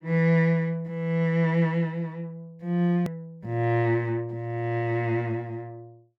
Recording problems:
click at an edit; at 3 s

